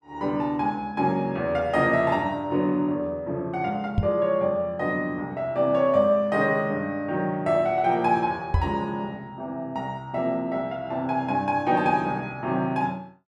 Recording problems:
microphone bump; at 4 s and at 8.5 s; peak +6 dB vs average level

